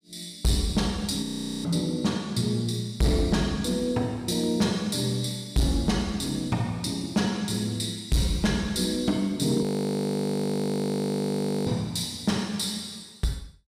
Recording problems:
distorted audio; hard clipping, signal-to-distortion ratio 12 dB
audio freezing; at 1 s and at 9.5 s for 2 s

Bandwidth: 15.5 kHz